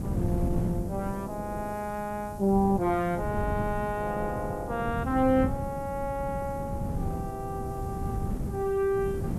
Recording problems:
background hiss; SNR 24 dB
wind on the microphone; below 210 Hz, SNR 5 dB

